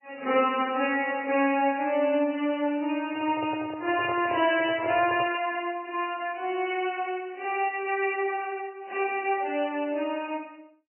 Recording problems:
lossy compression; MP3, log-spectral distance 4 dB, nothing above 3 kHz
microphone handling noise; from 3 to 5.5 s; peak -5 dB vs average level

